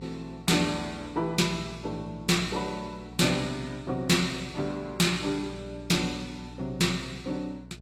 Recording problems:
lossy codec; AAC, log-spectral distance 3 dB, nothing above 14.7 kHz
distortion; hard clipping, uneven, signal-to-distortion ratio 12 dB
hum; 60 Hz, harmonics up to 660 Hz, SNR 18 dB

